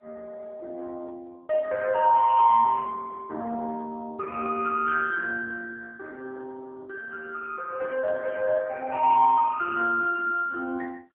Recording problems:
telephone audio; 280 Hz to 2.3 kHz, AMR-NB

